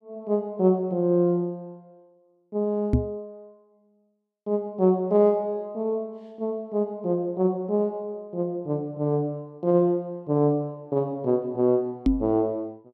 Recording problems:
microphone bump; at 3 s and at 12 s; peak +8 dB vs average level

